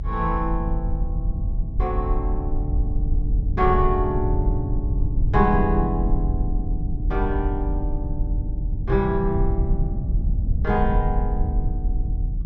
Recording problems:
low-pass filter; nothing above 8 kHz
low-frequency rumble; below 76 Hz, strongest tone 40 Hz, SNR -1 dB

